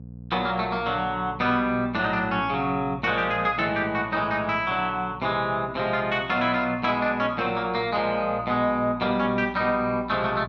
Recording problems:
hum; 60 Hz, harmonics up to 540 Hz, SNR 17 dB

